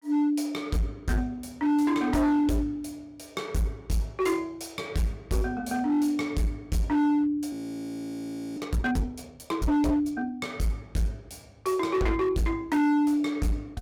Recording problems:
distortion; hard clipping, signal-to-distortion ratio 7 dB
frozen audio; at 7.5 s for 1 s

